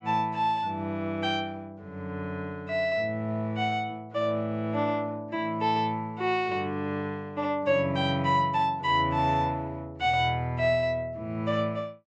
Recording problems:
treble cut off; nothing above 8 kHz

